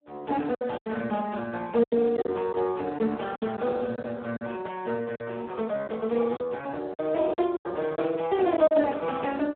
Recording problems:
telephone audio; 240 Hz to 2.6 kHz, Speex
lost packets; 8% of the sound replaced, filled with silence

